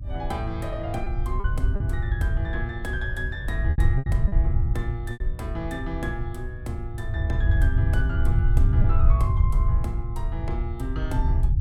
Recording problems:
electrical hum; 60 Hz, harmonics up to 300 Hz, SNR 16 dB
rumble; below 90 Hz, SNR -7 dB
packet loss; 3% of the sound replaced, filled with repeated pitch periods

